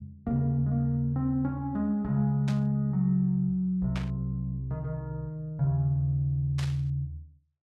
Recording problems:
static burst; at 2.5 s, at 4 s and at 6.5 s; peak -7 dB vs average level

